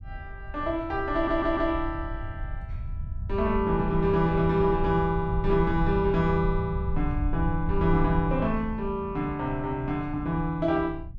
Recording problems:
low-frequency rumble; below 84 Hz, SNR 8 dB
stutter; at 1 s

